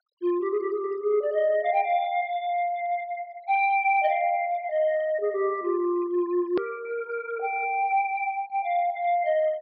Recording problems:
treble cut off; nothing above 5.5 kHz
denoising artefacts; signal-to-artefact ratio 24 dB
click at an edit; at 6.5 s

